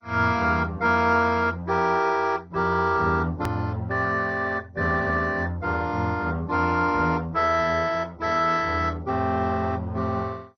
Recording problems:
lossy compression; MP2, log-spectral distance 3 dB, nothing above 17.7 kHz
hard cut with a click; at 3.5 s

